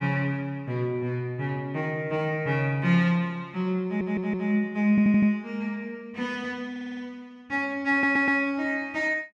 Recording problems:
stutter; 4 times, first at 4 s

